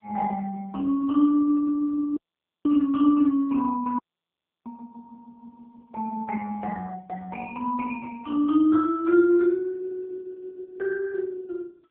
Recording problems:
phone line; 300 Hz to 2.2 kHz, AMR-NB
dropout; at 2 s and at 4 s for 0.5 s

